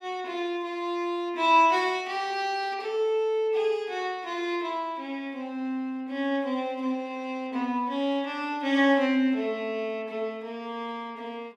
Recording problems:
none

